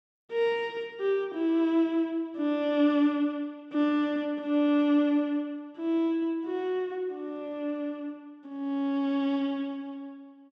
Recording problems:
none

